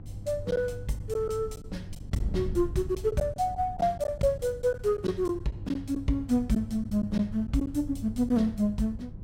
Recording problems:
hum; 50 Hz, harmonics up to 500 Hz, SNR 16 dB
wind noise; below 110 Hz, SNR 12 dB
lost packets; 5% of the sound replaced, filled with silence

